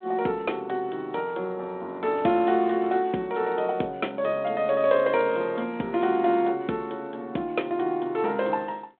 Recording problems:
telephone audio; 190 Hz to 3.5 kHz, G.726

